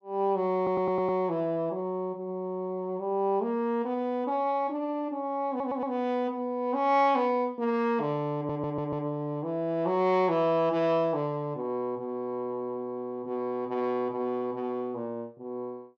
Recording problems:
audio stuttering; at 0.5 s, at 5.5 s and at 8.5 s

